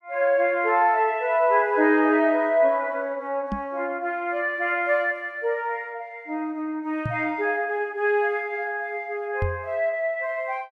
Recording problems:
microphone thump; at 3.5 s, at 7 s and at 9.5 s; peak 0 dB vs average level

